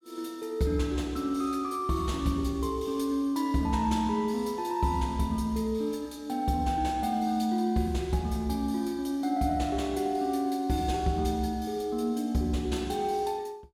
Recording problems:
none

